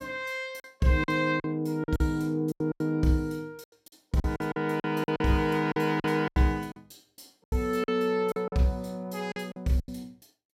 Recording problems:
packet loss; 13% of the sound replaced, filled with silence

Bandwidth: 16 kHz